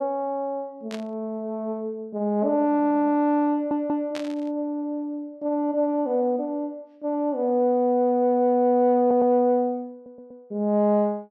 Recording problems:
burst of static; at 1 s and at 4 s; peak -9 dB vs average level
stutter; 4 times, first at 2.5 s

